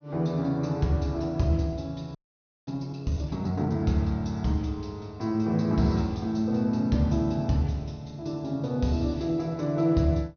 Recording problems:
low-pass filter; nothing above 6.4 kHz
frozen audio; at 2 s for 0.5 s

